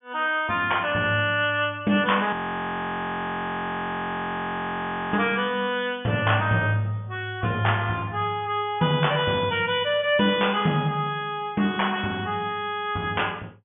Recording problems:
low-pass filter; nothing above 3.4 kHz
frozen audio; at 2.5 s for 3 s

